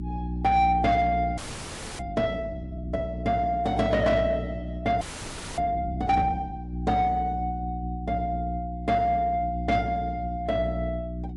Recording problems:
lossy codec; MP3, log-spectral distance 2 dB, nothing above 11 kHz
distorted audio; soft clipping, signal-to-distortion ratio 11 dB
hum; 60 Hz, harmonics up to 360 Hz, SNR 7 dB
frozen audio; at 1.5 s for 0.5 s and at 5 s for 0.5 s

